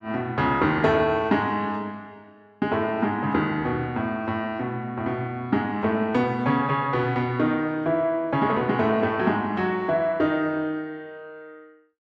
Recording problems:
none

